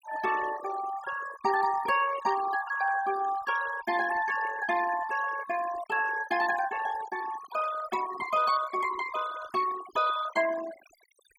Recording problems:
noise reduction artefacts; signal-to-artefact ratio 12 dB

